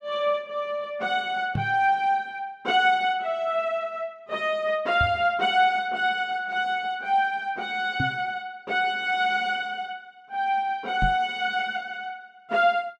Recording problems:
microphone bump; 4 times, first at 1.5 s; peak +1 dB vs average level

